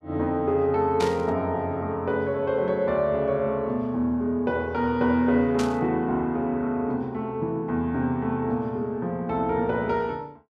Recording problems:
burst of static; at 1 s and at 5.5 s; peak -4 dB vs average level

